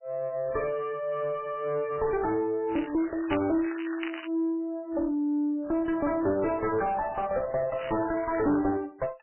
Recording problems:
lossy compression; MP3, log-spectral distance 5 dB, nothing above 2.7 kHz
distorted audio; soft clipping, signal-to-distortion ratio 6 dB
crackle; from 2.5 to 4.5 s and at 8 s; loose cable, SNR 11 dB

